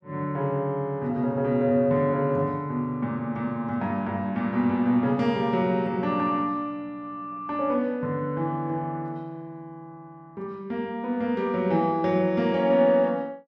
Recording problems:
none

